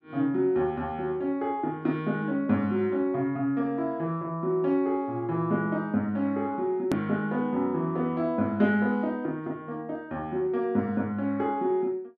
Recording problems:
hard cut with a click; at 7 s

